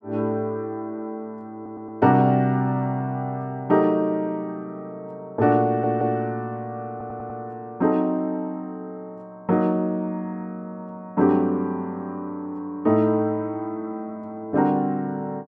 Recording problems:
stutter; at 1.5 s, at 5.5 s and at 7 s

